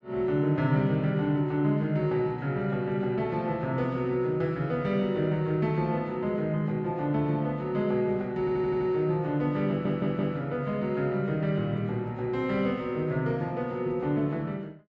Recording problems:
audio stuttering; at 8.5 s and at 9.5 s

